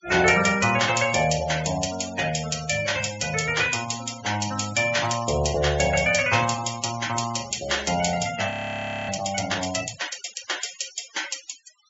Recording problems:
treble cut off; nothing above 8 kHz
noise reduction artefacts; signal-to-artefact ratio 13 dB
audio freezing; at 8.5 s for 0.5 s

